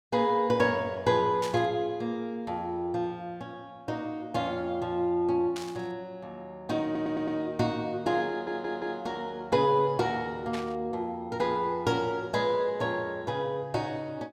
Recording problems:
static burst; at 1.5 s, at 5.5 s and at 11 s; peak -5 dB vs average level
audio stuttering; at 7 s and at 8.5 s

